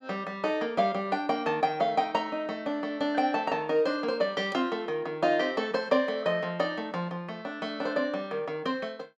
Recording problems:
none

